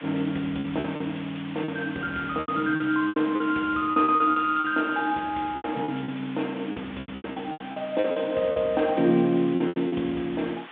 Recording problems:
telephone audio; 190 Hz to 3.5 kHz, G.726
background hiss; SNR 17 dB
packet loss; 13% of the sound replaced, filled with repeated pitch periods

